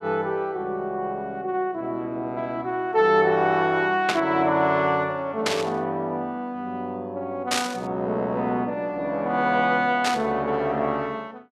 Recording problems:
burst of static; 4 times, first at 4 s; peak +4 dB vs average level

